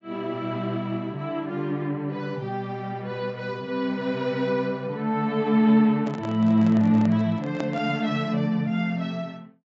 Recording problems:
low-pass filter; nothing above 8 kHz
microphone handling noise; from 6 to 8 s; peak -4 dB vs average level

